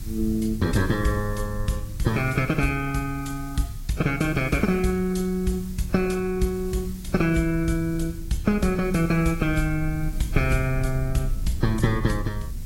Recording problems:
codec artefacts; AAC, log-spectral distance 2 dB, nothing above 11.6 kHz
background hiss; slope +1 dB per octave, SNR 22 dB
rumble; below 68 Hz, strongest tone 30 Hz, SNR 11 dB

